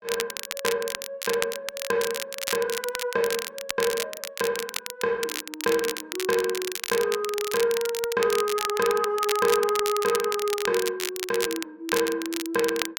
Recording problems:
crackle; vinyl, SNR 5 dB

